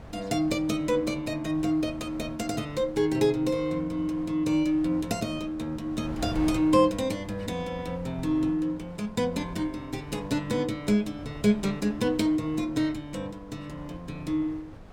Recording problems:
wind noise; below 500 Hz, SNR 17 dB

